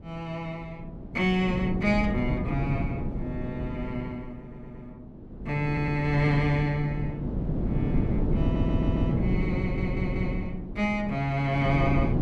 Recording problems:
wind on the microphone; below 260 Hz, SNR 1 dB
audio stuttering; 4 times, first at 4.5 s

